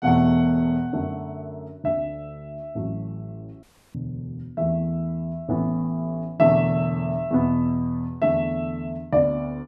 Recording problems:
dropout; at 3.5 s

